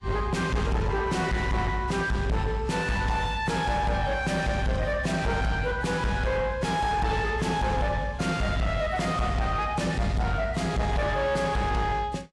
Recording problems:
codec artefacts; AAC, log-spectral distance 2 dB, nothing above 11 kHz
distortion; soft clipping, signal-to-distortion ratio 7 dB

